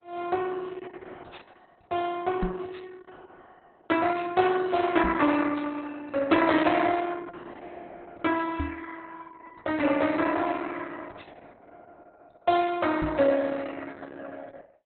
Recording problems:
lossy compression; Opus, log-spectral distance 5 dB, nothing above 4 kHz
microphone thump; 4 times, first at 2.5 s; peak 0 dB vs average level

